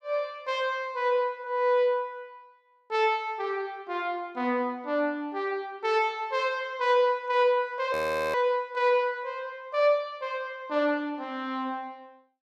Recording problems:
audio freezing; at 8 s

